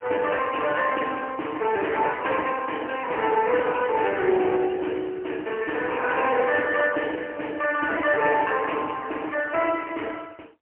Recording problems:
telephone audio; 320 Hz to 3 kHz, AMR-NB, then MP3

